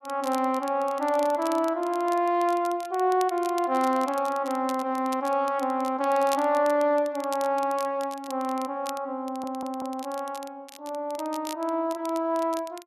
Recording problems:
crackle; vinyl, SNR 19 dB
audio stuttering; at 9.5 s

